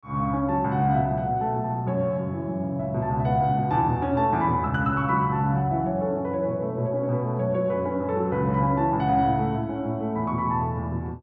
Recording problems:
none

